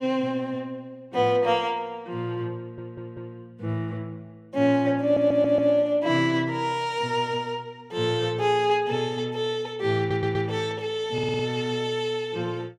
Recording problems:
stutter; 4 times, first at 2.5 s

